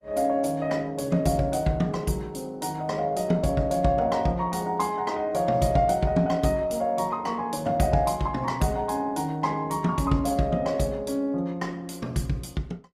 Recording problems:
lossy compression; Opus, log-spectral distance 2 dB, nothing above 15.1 kHz

